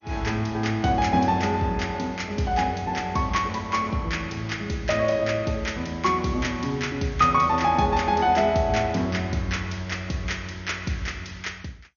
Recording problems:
lossy codec; MP2, log-spectral distance 3 dB, nothing above 6.7 kHz

